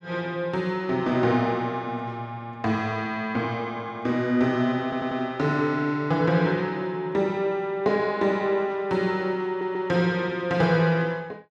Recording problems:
stutter; at 5 s and at 9.5 s

